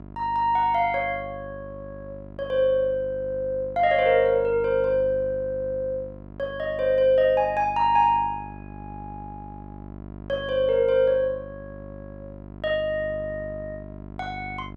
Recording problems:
hum; 50 Hz, harmonics up to 1.4 kHz, SNR 17 dB

